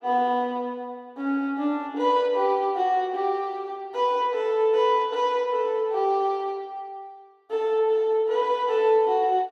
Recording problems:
none

